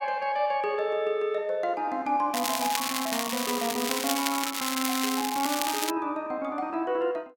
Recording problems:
crackling; from 2.5 to 6 s; loose cable, SNR 1 dB

